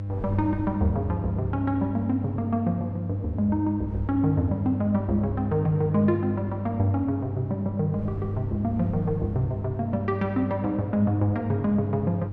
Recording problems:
hum; 50 Hz, harmonics up to 500 Hz, SNR 5 dB
wind noise; below 170 Hz, SNR 18 dB

